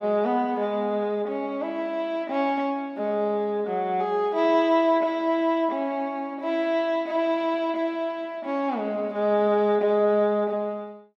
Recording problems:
none

